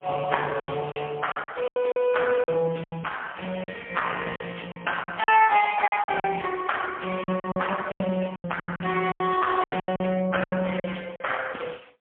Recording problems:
phone line; 220 Hz to 3.2 kHz, AMR-NB, then MP3
lost packets; 14% of the sound replaced, filled with silence
crackle; from 2 to 4 s and from 5.5 to 8 s; loose cable, SNR 28 dB

